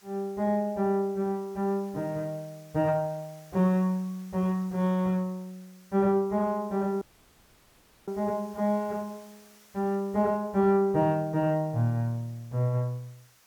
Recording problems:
hiss; slope 0 dB per octave, SNR 28 dB
audio cutting out; at 7 s for 1 s

